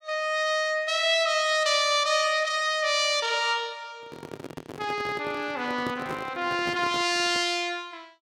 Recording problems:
handling noise; from 4 to 7.5 s; peak -6 dB vs average level

